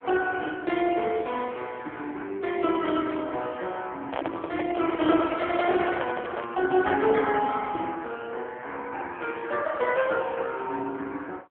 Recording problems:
telephone audio; 280 Hz to 3.5 kHz, AMR-NB
handling noise; from 4 to 6.5 s; peak 0 dB vs average level

